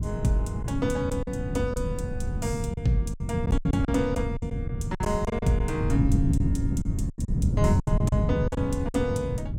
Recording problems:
wind on the microphone; below 170 Hz, SNR -1 dB
lost packets; 10% of the sound replaced, filled with silence

